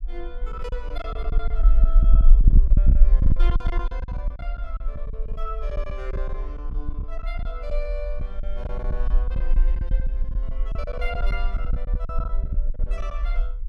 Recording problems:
rumble; below 44 Hz, SNR -12 dB
packet loss; 13% of the sound replaced, filled with silence
burst of static; at 3.5 s; peak -17 dB vs average level

